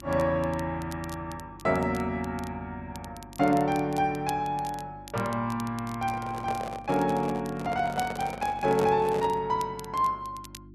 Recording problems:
electrical hum; 50 Hz, harmonics up to 350 Hz, SNR 20 dB
crackle; vinyl, SNR 20 dB
handling noise; from 6 to 9.5 s; peak -3 dB vs average level

